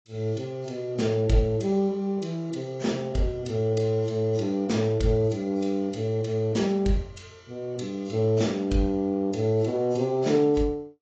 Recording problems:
lossy compression; AAC, log-spectral distance 2 dB, nothing above 7.3 kHz

